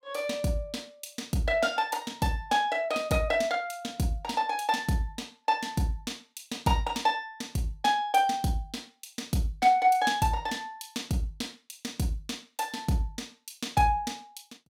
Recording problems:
none

